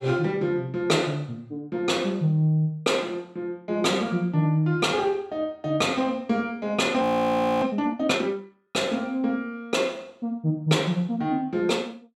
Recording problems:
audio freezing; at 7 s for 0.5 s

